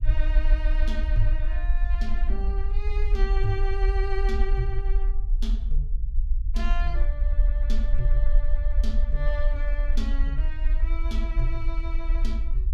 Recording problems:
rumble; below 44 Hz, SNR -8 dB

